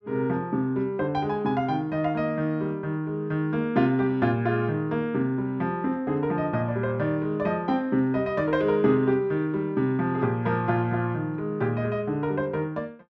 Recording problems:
none

